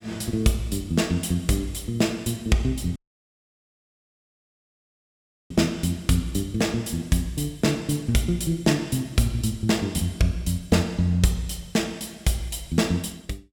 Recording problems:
dropout; at 3 s for 2.5 s

